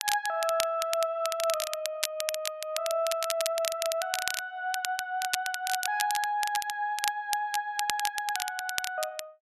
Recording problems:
crackle; vinyl, SNR 3 dB

